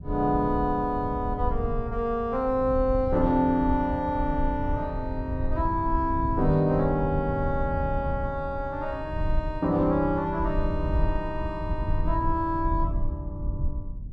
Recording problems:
rumble; below 84 Hz, SNR 6 dB

